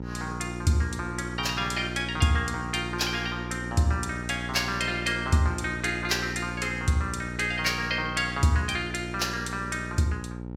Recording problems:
electrical hum; 60 Hz, harmonics up to 1 kHz, SNR 8 dB

